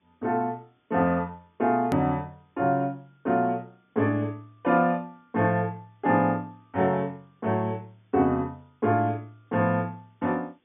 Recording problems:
treble cut off; nothing above 3.6 kHz
hiss; SNR 43 dB
edit click; at 2 s

